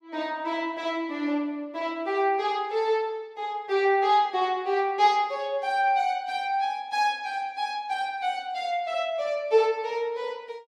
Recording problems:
none

